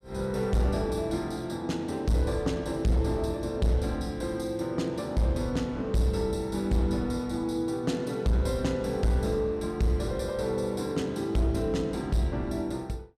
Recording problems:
distorted audio; hard clipping, signal-to-distortion ratio 11 dB

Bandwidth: 14.5 kHz